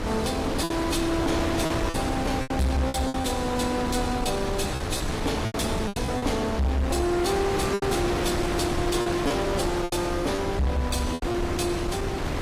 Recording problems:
codec artefacts; AAC, log-spectral distance 3 dB, nothing above 15.1 kHz
distorted audio; soft clipping, signal-to-distortion ratio 10 dB
low-frequency rumble; below 120 Hz, SNR 9 dB
wind on the microphone; below 1.3 kHz, SNR 2 dB
packet loss; 8% of the sound replaced, filled with repeated pitch periods

